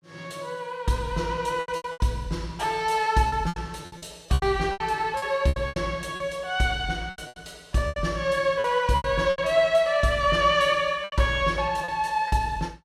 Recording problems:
lost packets; 12% of the sound replaced, filled with repeated pitch periods

